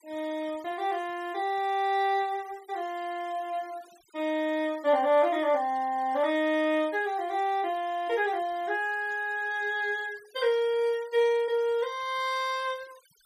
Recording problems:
denoising artefacts; signal-to-artefact ratio 24 dB

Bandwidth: 15 kHz